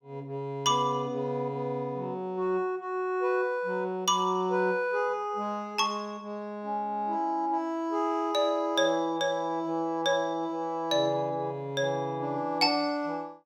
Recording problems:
none

